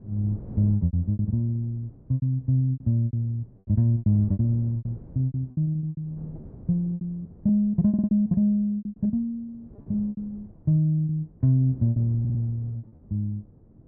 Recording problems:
wind on the microphone; below 230 Hz, SNR 21 dB
lost packets; 17% of the sound replaced, filled with repeated pitch periods
audio stuttering; at 8 s and at 12 s

